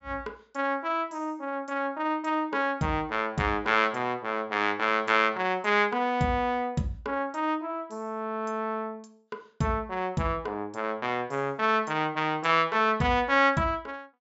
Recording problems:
treble missing; nothing above 8 kHz

